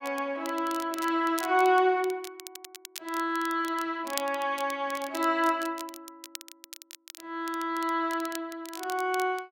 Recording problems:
crackle; vinyl, SNR 15 dB

